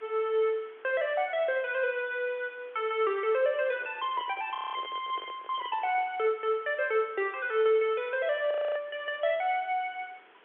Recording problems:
phone line; 300 Hz to 3.4 kHz, G.711
background hiss; SNR 26 dB
microphone handling noise; from 3.5 to 6 s; peak -12 dB vs average level
frozen audio; at 4.5 s and at 8.5 s

